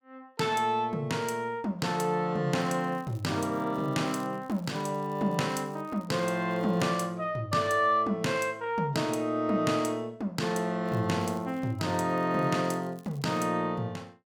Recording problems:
crackle; from 2.5 to 7 s and from 11 to 13 s; loose cable, SNR 29 dB

